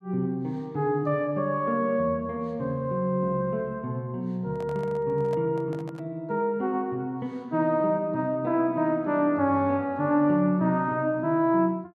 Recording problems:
handling noise; from 4.5 to 6 s; peak -11 dB vs average level

